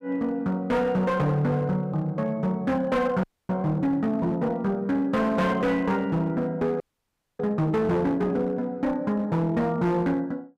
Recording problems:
distorted audio; hard clipping, uneven, signal-to-distortion ratio 11 dB
frozen audio; at 3 s and at 7 s for 0.5 s

